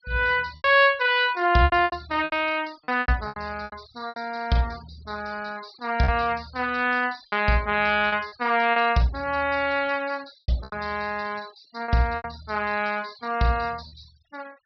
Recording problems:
low-pass filter; nothing above 5.5 kHz
denoising artefacts; signal-to-artefact ratio 24 dB
packet loss; 9% of the sound replaced, filled with repeated pitch periods

